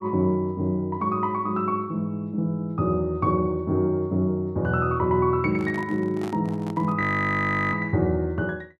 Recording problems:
microphone handling noise; from 5.5 to 7 s; peak -9 dB vs average level
frozen audio; at 7 s for 0.5 s

